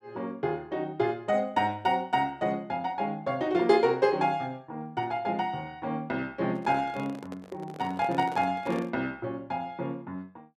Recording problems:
microphone handling noise; from 6.5 to 9 s; peak -6 dB vs average level

